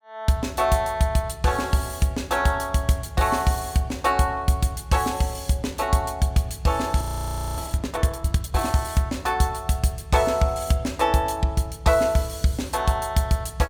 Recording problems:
audio freezing; at 7 s for 0.5 s

